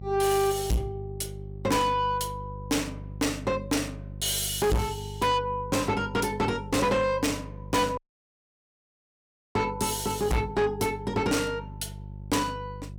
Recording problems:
distortion; soft clipping, signal-to-distortion ratio 6 dB
electrical hum; 50 Hz, harmonics up to 400 Hz, SNR 13 dB
dropout; at 8 s for 1.5 s

